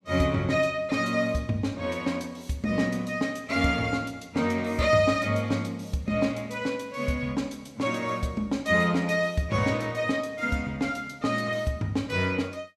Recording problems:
none

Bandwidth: 14.5 kHz